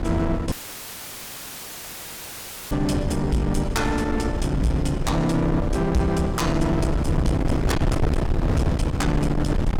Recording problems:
distorted audio; soft clipping, signal-to-distortion ratio 7 dB
wind noise; below 260 Hz, SNR 3 dB
audio cutting out; at 0.5 s for 2 s; filled with static

